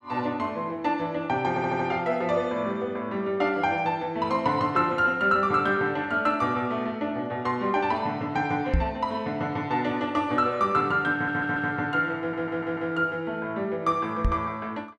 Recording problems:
stutter; at 1.5 s, at 11 s and at 12 s
microphone thump; at 8.5 s and at 14 s; peak +5 dB vs average level

